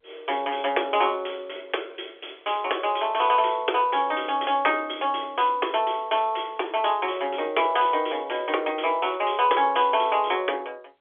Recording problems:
phone line; 320 Hz to 3.5 kHz, G.711

